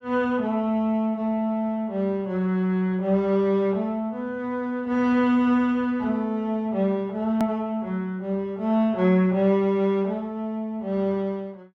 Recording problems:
edit click; at 7.5 s

